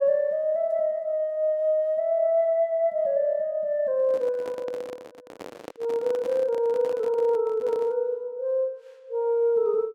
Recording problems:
microphone handling noise; from 4 to 8 s; peak -9 dB vs average level

